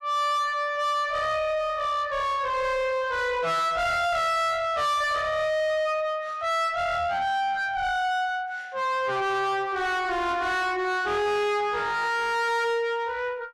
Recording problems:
distortion; soft clipping, signal-to-distortion ratio 5 dB

